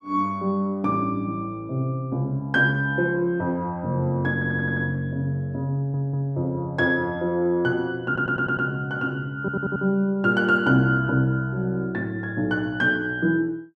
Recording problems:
audio stuttering; 4 times, first at 4.5 s

